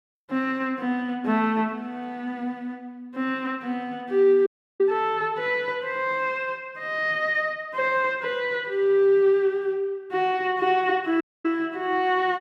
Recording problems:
audio cutting out; at 4.5 s and at 11 s

